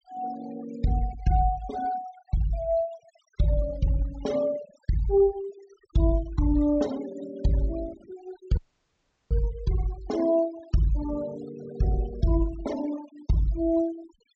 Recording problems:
low-pass filter; nothing above 8 kHz
denoising artefacts; signal-to-artefact ratio 19 dB
dropout; at 8.5 s for 0.5 s

